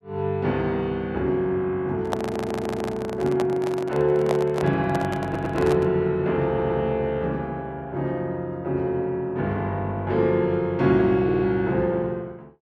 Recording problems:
handling noise; from 2 to 6 s; peak +1 dB vs average level
audio stuttering; 4 times, first at 2 s

